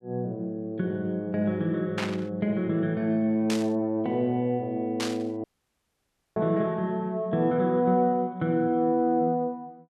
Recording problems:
burst of static; at 2 s, at 3.5 s and at 5 s; peak -1 dB vs average level
audio cutting out; at 5.5 s for 1 s

